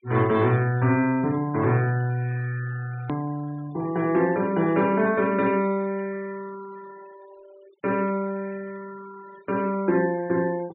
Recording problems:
treble missing; nothing above 4 kHz
denoising artefacts; signal-to-artefact ratio 23 dB
click at an edit; at 3 s

